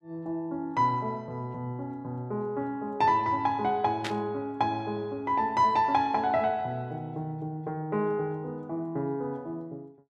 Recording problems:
static burst; at 4 s; peak 0 dB vs average level

